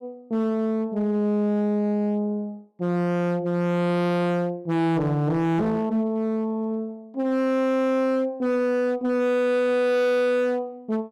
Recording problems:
distorted audio; hard clipping, uneven, signal-to-distortion ratio 7 dB

